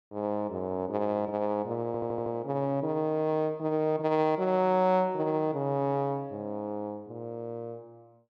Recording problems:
stutter; at 2 s

